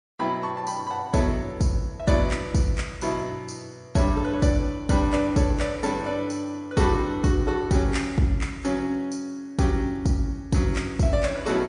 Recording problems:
lossy codec; MP3, log-spectral distance 2 dB, nothing above 9.5 kHz

